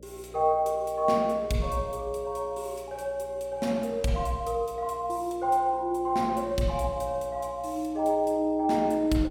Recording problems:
hum; 60 Hz, harmonics up to 600 Hz, SNR 22 dB

